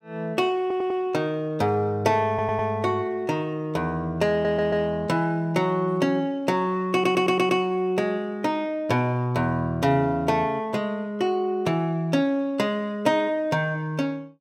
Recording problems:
audio stuttering; 4 times, first at 0.5 s

